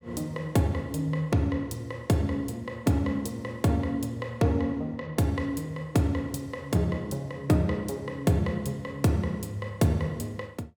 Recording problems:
none

